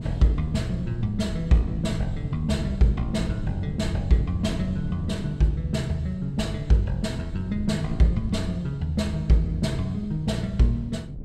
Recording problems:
wind on the microphone; below 170 Hz, SNR 9 dB

